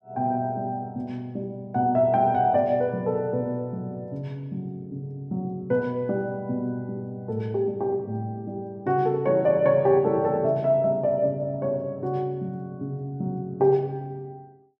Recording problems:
none

